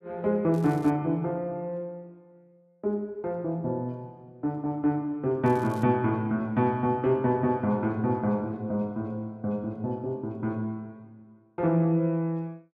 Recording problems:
crackling; at 0.5 s and at 5.5 s; loose cable, SNR 27 dB

